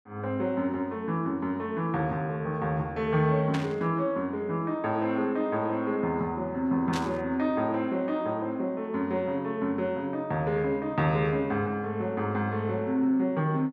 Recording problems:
burst of static; at 3.5 s and at 7 s; peak -3 dB vs average level

